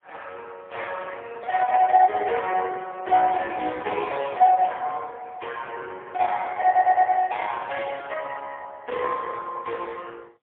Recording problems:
phone line; 320 Hz to 2.8 kHz, AMR-NB, then MP3
audio stuttering; at 6.5 s

